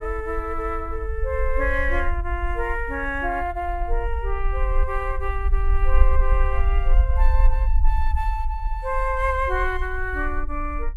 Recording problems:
low-frequency rumble; below 52 Hz, SNR -1 dB

